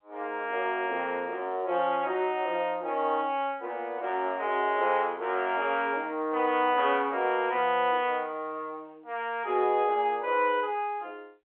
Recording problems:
telephone audio; 300 Hz to 3.4 kHz, G.711

